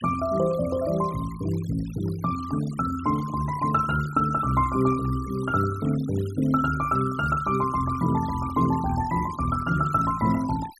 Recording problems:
denoising artefacts; signal-to-artefact ratio 18 dB

